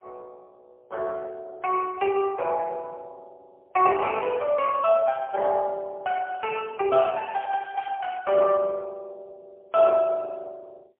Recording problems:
telephone audio; 320 Hz to 3 kHz, AMR-NB, then MP3

